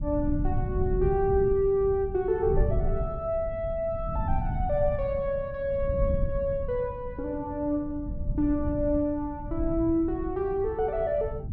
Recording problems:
rumble; below 120 Hz, SNR 6 dB

